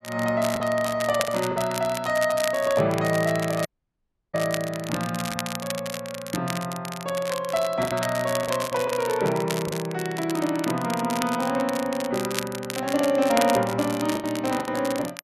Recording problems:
crackle; vinyl, SNR 9 dB
packet loss; 4% of the sound replaced, filled with the last packet
dropout; at 3.5 s for 0.5 s

